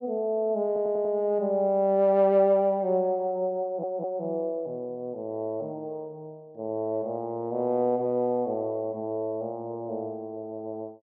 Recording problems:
audio stuttering; at 0.5 s and at 3.5 s

